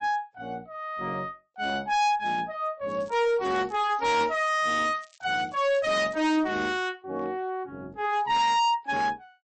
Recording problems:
lossy compression; MP3, log-spectral distance 2 dB, nothing above 8 kHz
distorted audio; hard clipping, signal-to-distortion ratio 6 dB
crackle; from 3 to 6.5 s; loose cable, SNR 27 dB

